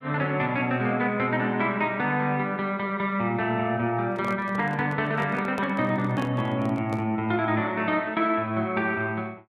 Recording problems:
microphone handling noise; from 4 to 7 s; peak -5 dB vs average level

